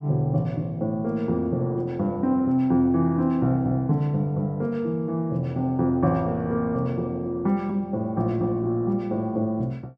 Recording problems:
none

